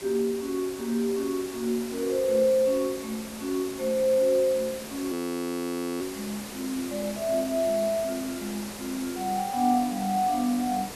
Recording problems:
background hiss; slope -3 dB per octave, SNR 11 dB
audio freezing; at 5 s for 1 s

